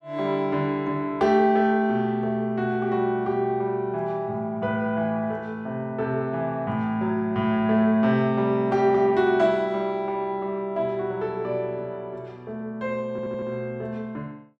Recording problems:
audio stuttering; at 13 s

